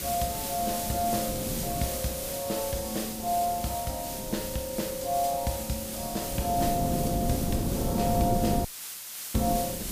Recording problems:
hiss; slope +3 dB per octave, SNR 4 dB
wind noise; below 320 Hz, SNR 3 dB
dropout; at 8.5 s for 0.5 s

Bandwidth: 15 kHz